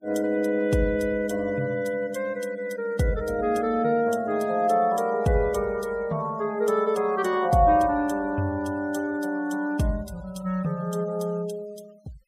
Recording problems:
denoising artefacts; signal-to-artefact ratio 26 dB

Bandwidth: 15.5 kHz